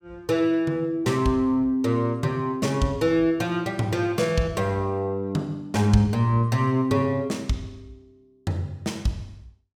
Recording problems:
none

